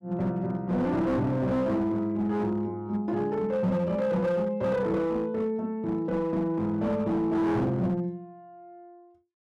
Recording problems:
distortion; hard clipping, signal-to-distortion ratio 11 dB

